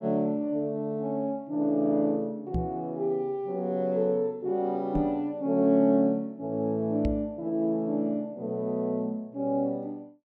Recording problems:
microphone thump; at 2.5 s, at 5 s and at 7 s; peak +2 dB vs average level

